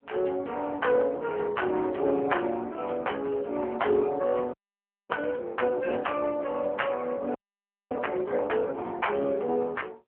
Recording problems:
phone line; 280 Hz to 3.2 kHz, AMR-NB
audio freezing; at 4.5 s for 0.5 s and at 7.5 s for 0.5 s

